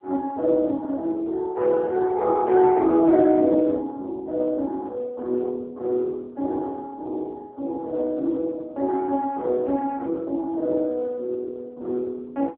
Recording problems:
phone line; 220 Hz to 2.2 kHz, AMR-NB

